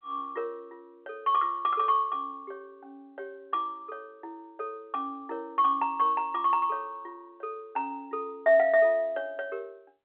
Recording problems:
phone line; 340 Hz to 3.5 kHz, G.711

